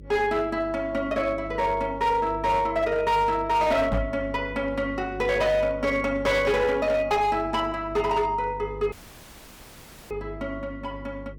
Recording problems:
distorted audio; hard clipping, signal-to-distortion ratio 12 dB
mains hum; 50 Hz, harmonics up to 600 Hz, SNR 16 dB
microphone thump; at 4 s; peak +2 dB vs average level
audio cutting out; at 9 s for 1 s

